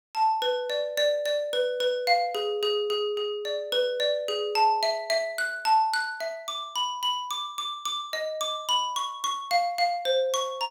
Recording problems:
none

